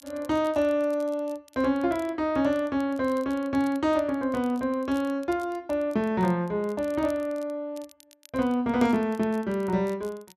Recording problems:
crackling; vinyl, SNR 27 dB

